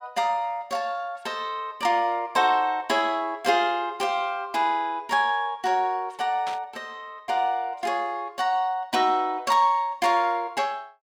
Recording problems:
static burst; at 6.5 s; peak -8 dB vs average level

